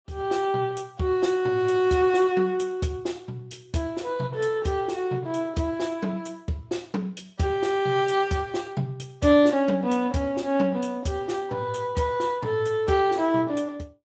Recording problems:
codec artefacts; Speex, log-spectral distance 3 dB, nothing above 7.8 kHz

